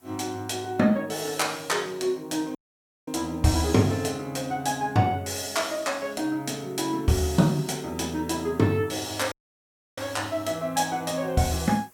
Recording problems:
background hiss; SNR 29 dB
audio cutting out; at 2.5 s for 0.5 s and at 9.5 s for 0.5 s

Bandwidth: 17 kHz